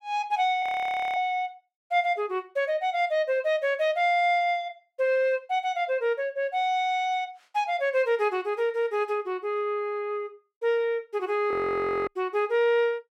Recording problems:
frozen audio; at 0.5 s for 0.5 s and at 12 s for 0.5 s

